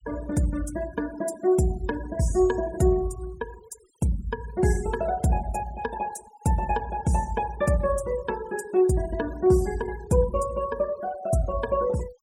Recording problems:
denoising artefacts; signal-to-artefact ratio 19 dB

